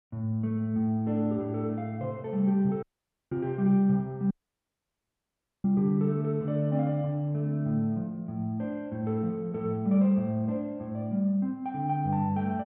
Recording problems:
dropout; at 3 s and at 4.5 s for 1.5 s

